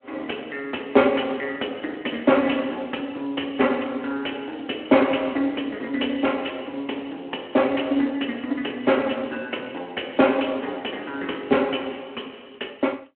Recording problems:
phone line; 240 Hz to 3.3 kHz, Speex

